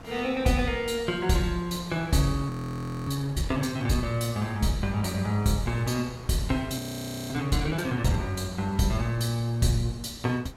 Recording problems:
wind noise; below 980 Hz, SNR 18 dB
frozen audio; at 2.5 s for 0.5 s and at 7 s for 0.5 s

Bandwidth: 16 kHz